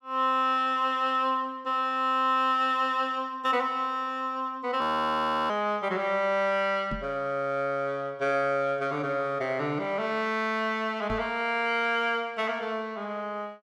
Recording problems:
audio freezing; at 5 s for 0.5 s
microphone thump; at 7 s and at 11 s; peak -4 dB vs average level

